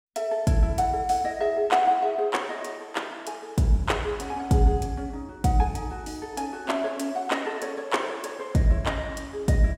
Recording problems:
none

